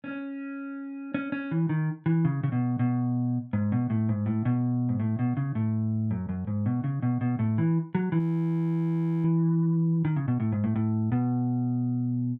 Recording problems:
audio freezing; at 8 s for 1 s

